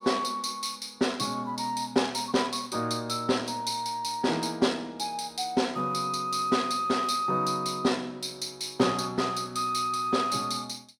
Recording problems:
none

